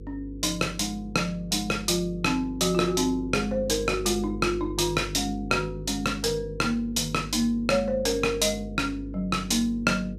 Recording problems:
hum; 50 Hz, harmonics up to 500 Hz, SNR 14 dB

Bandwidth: 15 kHz